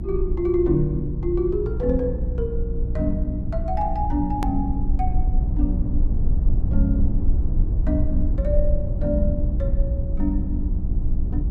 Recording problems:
mains hum; 60 Hz, harmonics up to 360 Hz, SNR 4 dB
rumble; below 68 Hz, SNR -1 dB
click at an edit; at 4.5 s

